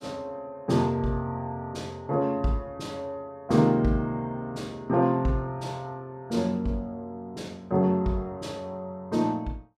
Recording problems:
none

